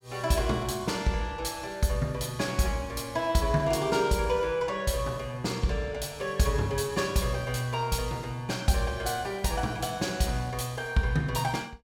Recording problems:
none

